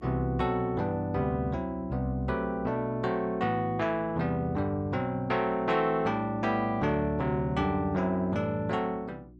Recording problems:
hum; 60 Hz, harmonics up to 360 Hz, SNR 22 dB

